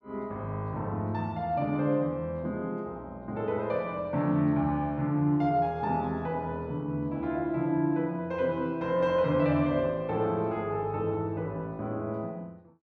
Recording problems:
none

